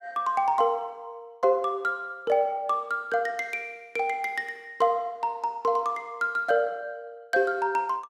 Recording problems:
none

